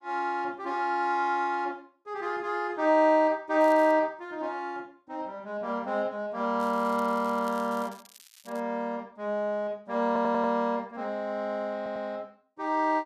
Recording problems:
crackle; at 3.5 s and from 6.5 to 8.5 s; loose cable, SNR 24 dB
stutter; at 10 s and at 12 s

